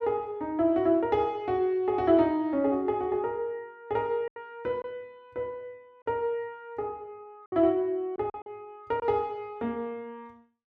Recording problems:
packet loss; 3% of the sound replaced, filled with silence

